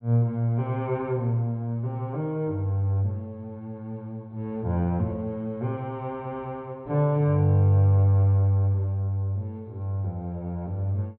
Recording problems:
treble missing; nothing above 4 kHz

